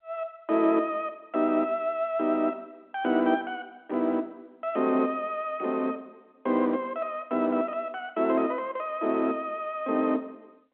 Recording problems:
phone line; 220 Hz to 3.7 kHz, G.711

